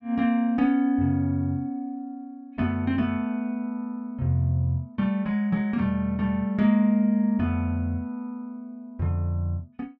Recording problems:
none

